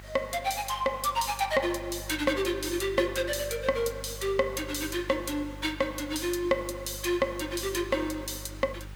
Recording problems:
electrical hum; 50 Hz, harmonics up to 600 Hz, SNR 16 dB
hiss; SNR 23 dB

